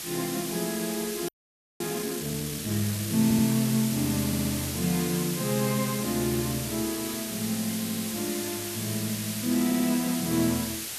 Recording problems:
hiss; SNR 4 dB
audio freezing; at 1.5 s for 0.5 s
audio stuttering; 4 times, first at 3 s

